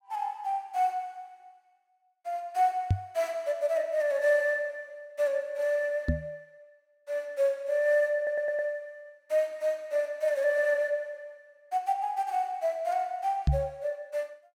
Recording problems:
knock on the microphone; at 3 s, at 6 s and at 13 s; peak +8 dB vs average level
audio stuttering; at 8 s

